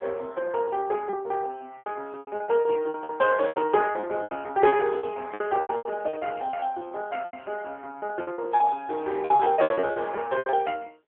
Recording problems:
telephone audio; 320 Hz to 3.2 kHz, AMR-NB
lost packets; 19% of the sound replaced, filled with repeated pitch periods

